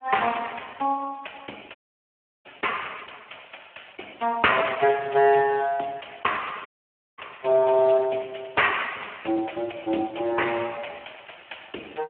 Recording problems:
phone line; 280 Hz to 3.1 kHz, Speex
audio cutting out; at 2 s for 0.5 s and at 6.5 s for 0.5 s

